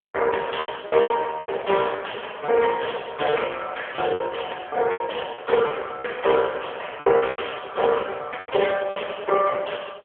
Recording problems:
telephone audio; 340 Hz to 2.1 kHz, AMR-NB
packet loss; 10% of the sound replaced, filled with repeated pitch periods

